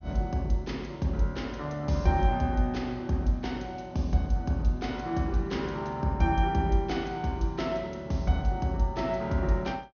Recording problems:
treble cut off; nothing above 6.6 kHz

